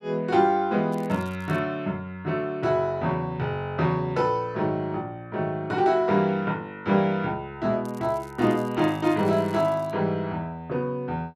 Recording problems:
crackling; at 1 s and from 8 to 10 s; loose cable, SNR 27 dB

